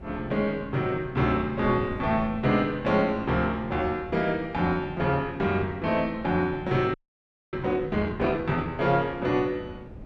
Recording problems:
wind on the microphone; below 250 Hz, SNR 16 dB
frozen audio; at 7 s for 0.5 s

